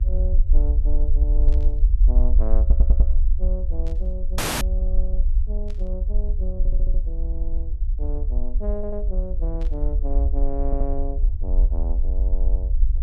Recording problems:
mains hum; 60 Hz, harmonics up to 600 Hz, SNR 19 dB
low-frequency rumble; below 52 Hz, SNR -12 dB
burst of static; 4 times, first at 1.5 s; peak -8 dB vs average level
stutter; 4 times, first at 2.5 s
dropout; at 4.5 s

